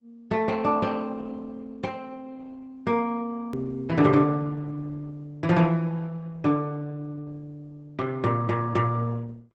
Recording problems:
lossy compression; Opus, log-spectral distance 2 dB
hard cut with a click; at 3.5 s

